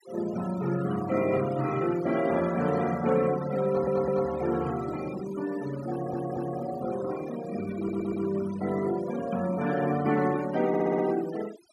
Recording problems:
denoising artefacts; signal-to-artefact ratio 16 dB
audio stuttering; 4 times, first at 3.5 s

